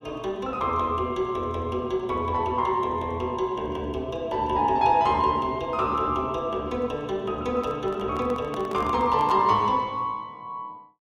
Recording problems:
handling noise; from 7.5 to 9.5 s; peak -8 dB vs average level

